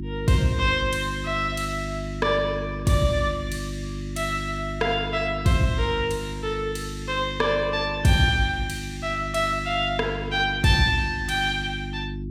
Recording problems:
hum; 50 Hz, harmonics up to 350 Hz, SNR 9 dB

